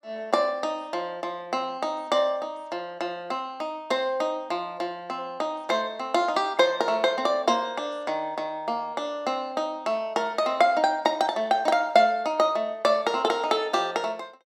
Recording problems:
none

